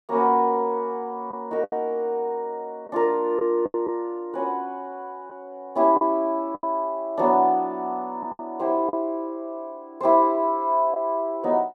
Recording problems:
lost packets; 4% of the sound replaced, filled with the last packet

